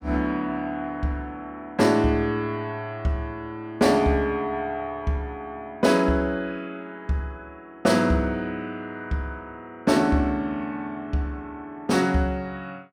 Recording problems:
none

